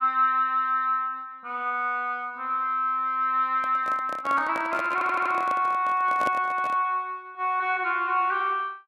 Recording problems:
handling noise; from 3.5 to 7 s; peak -3 dB vs average level
audio stuttering; at 5 s

